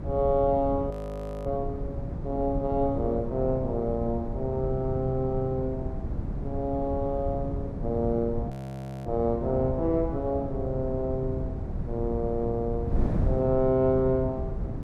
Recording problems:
wind on the microphone; below 170 Hz, SNR 5 dB
audio freezing; at 1 s for 0.5 s and at 8.5 s for 0.5 s

